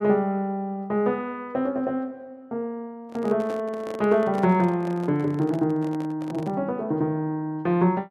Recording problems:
microphone handling noise; from 3 to 6.5 s; peak -8 dB vs average level

